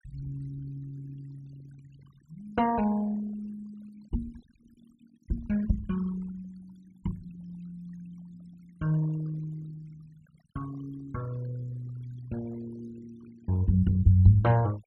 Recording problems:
denoising artefacts; signal-to-artefact ratio 22 dB

